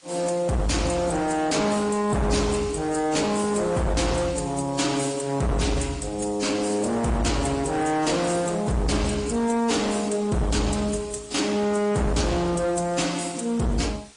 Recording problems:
lossy compression; MP3, then AAC, log-spectral distance 6 dB, nothing above 9.8 kHz
distortion; hard clipping, signal-to-distortion ratio 6 dB
background hiss; slope +1 dB per octave, SNR 25 dB

